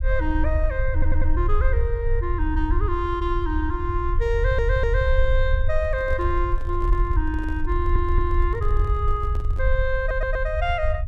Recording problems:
rumble; below 68 Hz, SNR -1 dB
stutter; 4 times, first at 1 s
handling noise; from 5.5 to 9.5 s; peak -10 dB vs average level

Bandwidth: 14.5 kHz